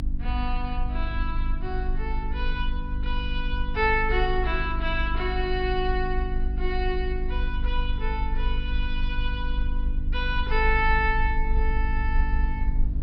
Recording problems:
treble cut off; nothing above 5.5 kHz
hum; 50 Hz, harmonics up to 300 Hz, SNR 8 dB
low-frequency rumble; below 54 Hz, strongest tone 26 Hz, SNR 1 dB

